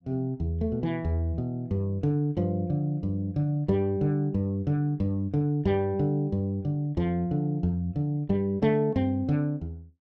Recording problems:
none

